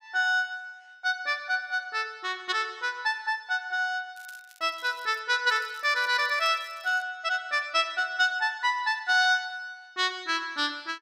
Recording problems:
crackling; from 4 to 5 s and from 5.5 to 7 s; loose cable, SNR 26 dB

